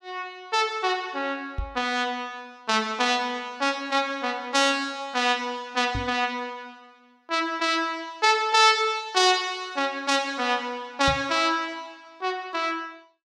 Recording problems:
microphone thump; at 1.5 s, at 6 s and at 11 s; peak -2 dB vs average level

